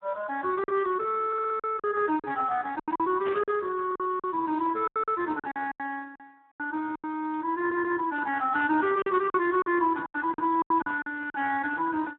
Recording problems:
phone line; 280 Hz to 2.4 kHz, Speex
lost packets; 11% of the sound replaced, filled with silence
audio stuttering; at 1.5 s and at 7.5 s
burst of static; at 3.5 s; peak -5 dB vs average level

